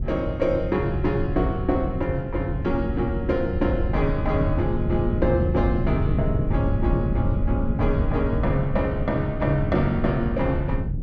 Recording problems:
wind on the microphone; below 140 Hz, SNR 2 dB

